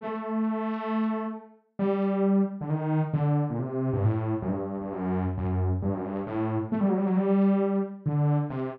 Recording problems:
none

